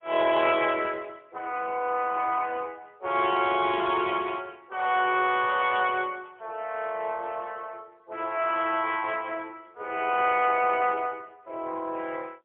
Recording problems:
telephone audio; 300 Hz to 3.6 kHz, AMR-NB, then MP3

